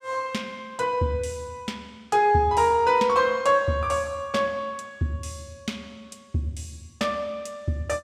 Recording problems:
none

